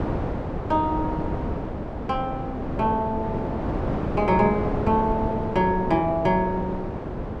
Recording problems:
wind on the microphone; below 560 Hz, SNR 4 dB

